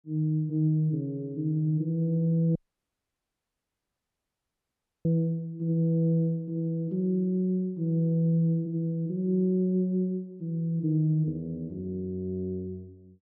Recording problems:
audio cutting out; at 2.5 s for 2.5 s

